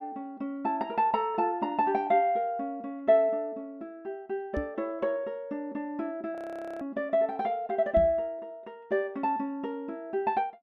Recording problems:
microphone bump; at 4.5 s and at 8 s; peak 0 dB vs average level
frozen audio; at 6.5 s

